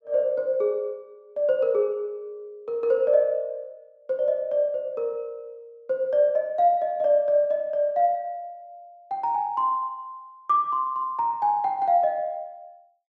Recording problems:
none

